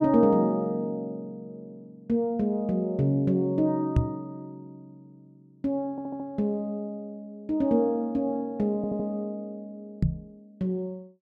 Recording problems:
microphone bump; at 4 s and at 10 s; peak +8 dB vs average level
audio stuttering; at 6 s and at 9 s

